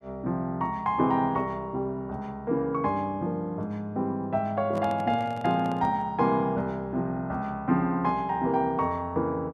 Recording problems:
microphone handling noise; from 4.5 to 6 s; peak -8 dB vs average level

